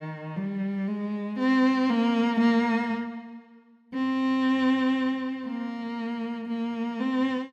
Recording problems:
none

